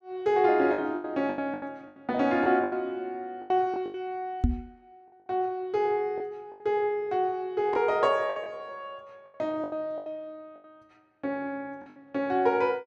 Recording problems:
packet loss; 10% of the sound replaced, filled with the last packet
microphone thump; at 4.5 s; peak +8 dB vs average level

